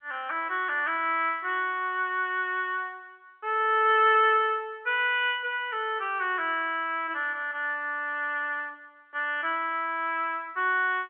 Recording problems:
phone line; 300 Hz to 3.4 kHz, G.711

